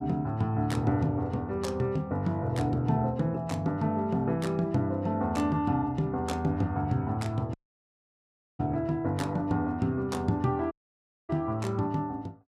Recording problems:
dropout; at 7.5 s for 1 s and at 11 s for 0.5 s

